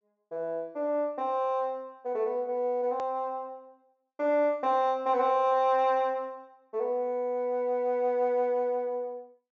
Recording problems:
treble cut off; nothing above 8 kHz
hard cut with a click; at 3 s

